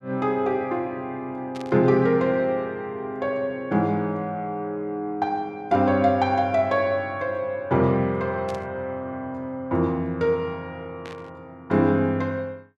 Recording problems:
static burst; at 1.5 s, at 8.5 s and at 11 s; peak -13 dB vs average level

